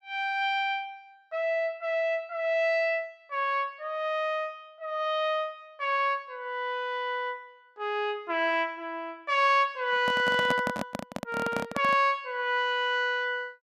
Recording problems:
handling noise; from 10 to 12 s; peak +1 dB vs average level

